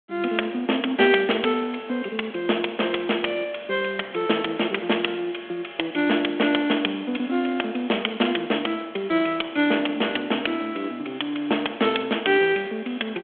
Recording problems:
telephone audio; 220 Hz to 3.4 kHz, G.726

